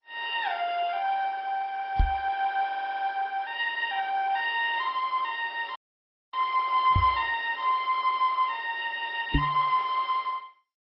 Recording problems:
lossy codec; AAC, then MP2, log-spectral distance 3 dB, nothing above 5.3 kHz
microphone bump; at 2 s, at 7 s and at 9.5 s; peak +6 dB vs average level
audio stuttering; at 2.5 s
dropout; at 6 s for 0.5 s

